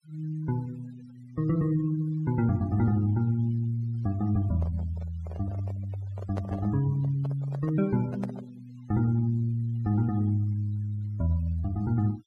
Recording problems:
noise reduction artefacts; signal-to-artefact ratio 25 dB
handling noise; from 4.5 to 8.5 s; peak -6 dB vs average level

